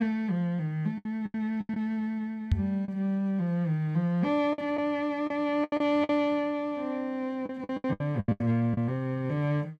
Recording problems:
lost packets; 10% of the sound replaced, filled with the last packet
knock on the microphone; at 2.5 s; peak +8 dB vs average level

